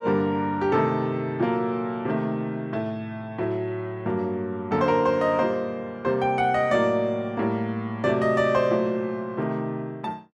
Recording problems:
none

